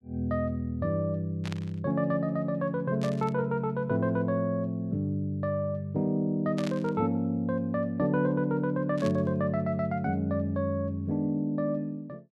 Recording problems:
burst of static; 4 times, first at 1.5 s; peak -7 dB vs average level

